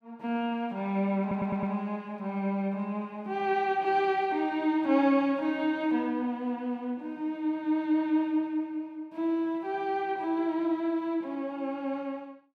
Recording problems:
stutter; at 1 s

